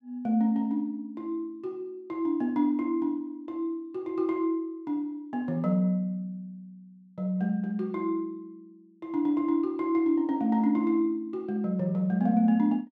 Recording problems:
none

